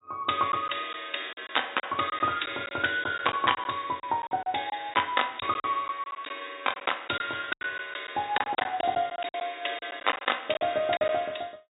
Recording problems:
treble missing; nothing above 4 kHz
packet loss; 10% of the sound replaced, filled with silence

